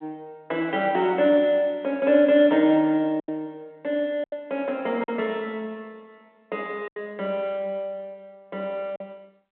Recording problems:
phone line; 170 Hz to 3.5 kHz, G.726
lost packets; 4% of the sound replaced, filled with silence

